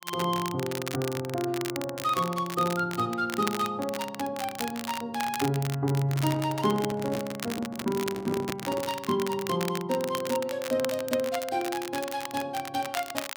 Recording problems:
crackling; vinyl, SNR 9 dB
microphone handling noise; from 6 to 9 s; peak 0 dB vs average level

